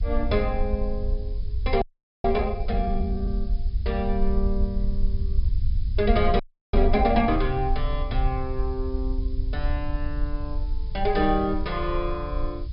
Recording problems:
treble missing; nothing above 5.5 kHz
background hiss; slope +5 dB per octave, SNR 29 dB
rumble; below 60 Hz, SNR 2 dB
audio freezing; at 2 s and at 6.5 s

